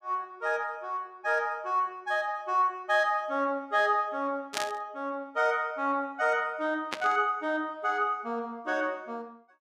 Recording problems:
burst of static; at 4.5 s and at 7 s; peak +2 dB vs average level

